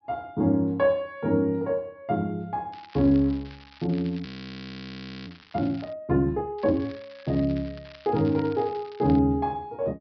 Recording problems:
treble missing; nothing above 5.5 kHz
crackle; from 2.5 to 6 s and from 6.5 to 9 s; loose cable, SNR 21 dB
audio freezing; at 4.5 s for 1 s

